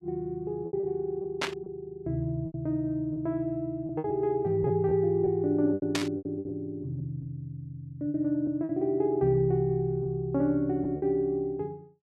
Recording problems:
lost packets; 7% of the sound replaced, filled with repeated pitch periods
static burst; at 1.5 s and at 6 s; peak +3 dB vs average level

